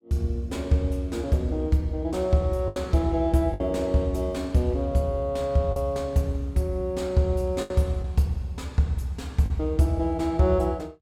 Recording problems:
packet loss; 3% of the sound replaced, filled with the last packet

